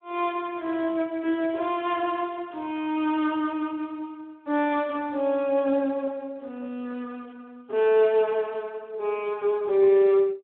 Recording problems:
telephone audio; 240 Hz to 3.8 kHz, Speex

